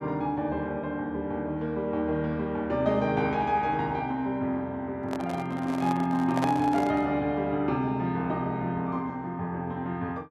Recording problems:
microphone handling noise; from 5 to 7 s; peak +2 dB vs average level

